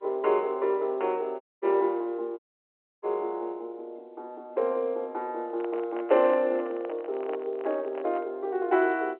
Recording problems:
telephone audio; 300 Hz to 3.8 kHz, G.711
audio cutting out; at 1.5 s and at 2.5 s for 0.5 s
handling noise; from 5.5 to 8.5 s; peak -7 dB vs average level

